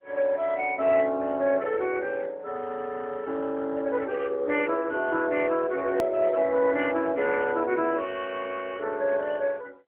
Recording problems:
telephone audio; 220 Hz to 3.9 kHz, AMR-NB
hard cut with a click; at 6 s

